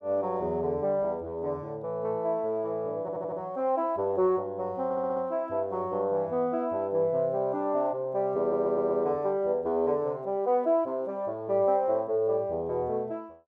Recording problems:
stutter; at 3 s, at 5 s and at 8.5 s

